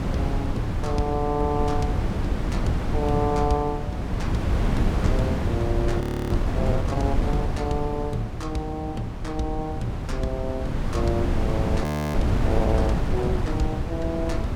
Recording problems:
wind on the microphone; below 220 Hz, SNR -2 dB
frozen audio; at 6 s and at 12 s

